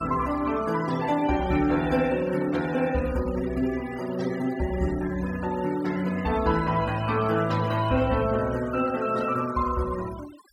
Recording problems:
denoising artefacts; signal-to-artefact ratio 17 dB

